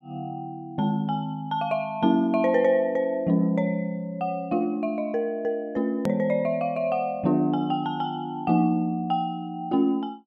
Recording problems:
click at an edit; at 6 s

